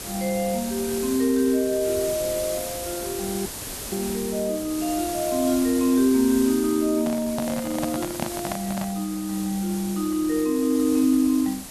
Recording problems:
hiss; SNR 9 dB
dropout; at 3.5 s
handling noise; from 7 to 9 s; peak 0 dB vs average level

